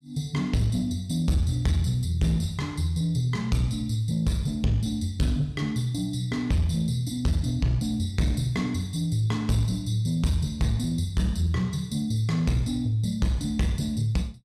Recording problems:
distorted audio; soft clipping, signal-to-distortion ratio 12 dB

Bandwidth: 14.5 kHz